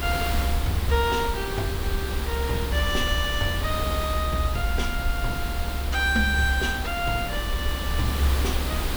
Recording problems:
hiss; slope -4 dB per octave, SNR 4 dB
rumble; below 70 Hz, strongest tone 68 Hz, SNR 2 dB

